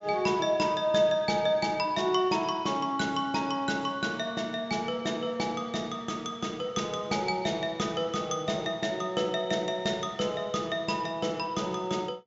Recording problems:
treble missing; nothing above 8 kHz

